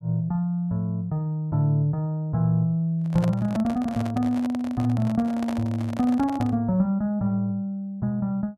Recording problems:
microphone handling noise; from 3 to 6.5 s; peak -5 dB vs average level

